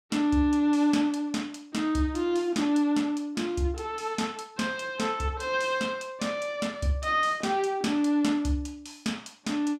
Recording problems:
none

